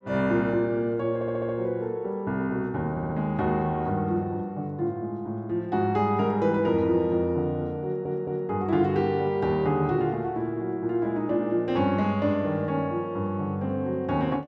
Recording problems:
stutter; at 1 s, at 3 s and at 8 s

